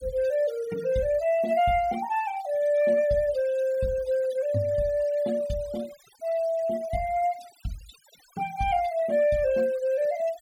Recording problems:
denoising artefacts; signal-to-artefact ratio 21 dB

